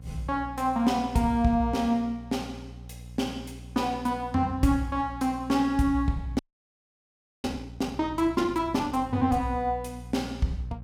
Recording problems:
hum; 60 Hz, harmonics up to 540 Hz, SNR 16 dB
audio freezing; at 6.5 s for 1 s

